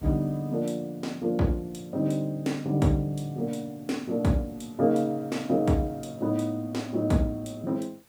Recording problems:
background hiss; slope -3 dB per octave, SNR 29 dB

